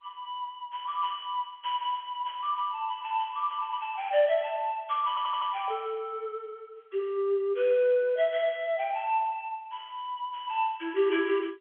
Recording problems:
phone line; 340 Hz to 3.4 kHz, G.711
audio stuttering; at 5 s

